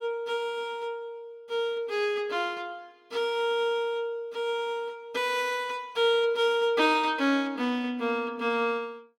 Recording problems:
none

